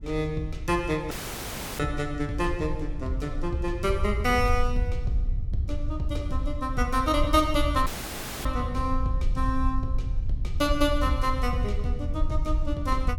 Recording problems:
rumble; below 66 Hz, SNR 3 dB
audio cutting out; at 1 s for 0.5 s and at 8 s for 0.5 s

